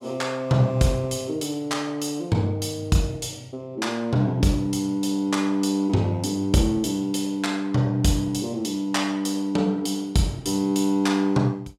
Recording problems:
none

